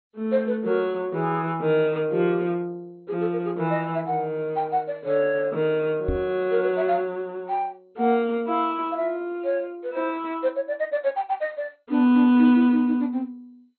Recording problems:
lossy compression; MP2, log-spectral distance 2 dB, nothing above 3.9 kHz
microphone bump; at 6 s; peak 0 dB vs average level

